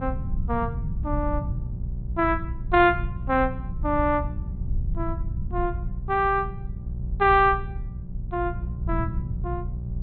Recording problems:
low-pass filter; nothing above 4.2 kHz
electrical hum; 60 Hz, harmonics up to 420 Hz, SNR 11 dB
rumble; below 92 Hz, SNR 8 dB

